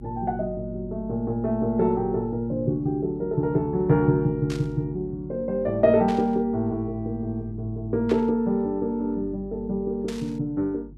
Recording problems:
electrical hum; 50 Hz, harmonics up to 350 Hz, SNR 18 dB
burst of static; 4 times, first at 4.5 s; peak -9 dB vs average level

